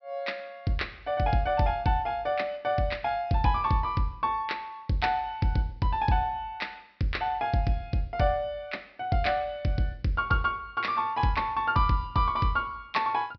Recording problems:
treble cut off; nothing above 5.5 kHz

